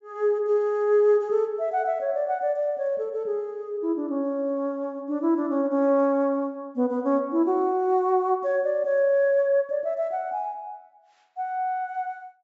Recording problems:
low-pass filter; nothing above 8 kHz

